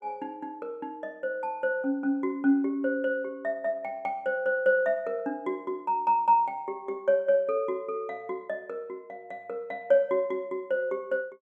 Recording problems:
none

